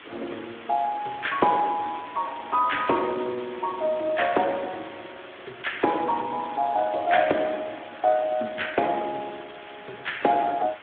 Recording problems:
telephone audio; 260 Hz to 3.5 kHz, Speex
background hiss; SNR 17 dB

